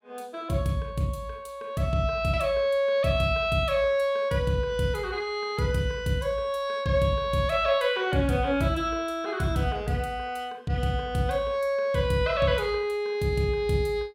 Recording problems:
none

